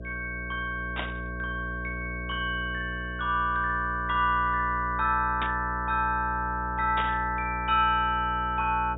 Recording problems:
treble missing; nothing above 4 kHz
hum; 60 Hz, harmonics up to 660 Hz, SNR 10 dB
burst of static; at 1 s, at 5.5 s and at 7 s; peak -1 dB vs average level

